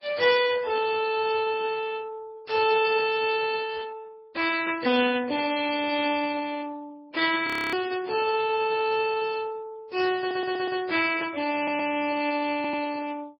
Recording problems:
codec artefacts; Speex, then MP3, log-spectral distance 4 dB, nothing above 4.6 kHz
burst of static; at 2.5 s; peak -9 dB vs average level
audio freezing; at 7.5 s
audio stuttering; at 10 s, at 12 s and at 13 s

